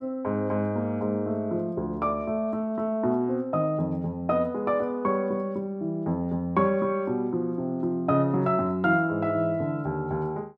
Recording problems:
none

